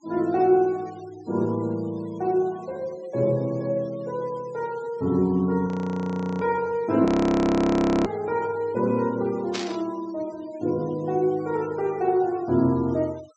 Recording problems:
low-pass filter; nothing above 8 kHz
denoising artefacts; signal-to-artefact ratio 26 dB
frozen audio; at 5.5 s for 0.5 s and at 7 s for 1 s
static burst; at 9.5 s; peak -2 dB vs average level

